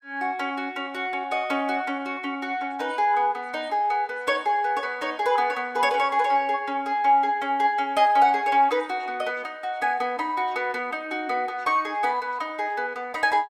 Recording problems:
none

